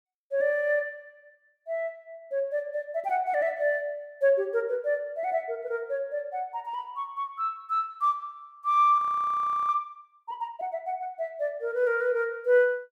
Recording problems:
frozen audio; at 9 s for 0.5 s

